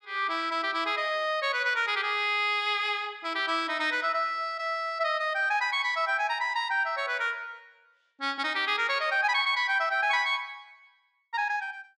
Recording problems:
none

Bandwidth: 12.5 kHz